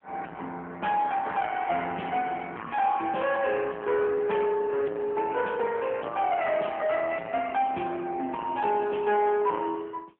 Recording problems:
telephone audio; 240 Hz to 3.3 kHz, AMR-NB
distorted audio; soft clipping, signal-to-distortion ratio 11 dB

